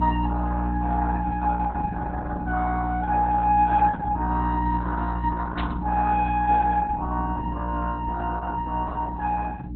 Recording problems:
lossy codec; Opus, log-spectral distance 3 dB
mains hum; 60 Hz, harmonics up to 300 Hz, SNR 3 dB
burst of static; at 5.5 s; peak -5 dB vs average level

